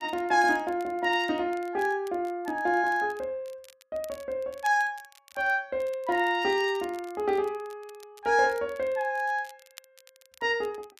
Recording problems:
crackling; vinyl, SNR 26 dB

